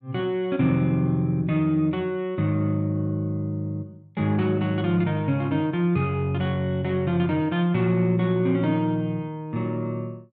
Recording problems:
none

